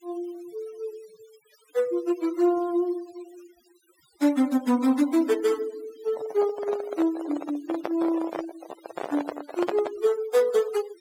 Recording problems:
denoising artefacts; signal-to-artefact ratio 18 dB
handling noise; from 6 to 10 s; peak +1 dB vs average level

